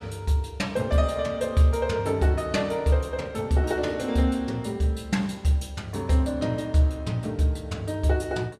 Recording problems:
none

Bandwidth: 14.5 kHz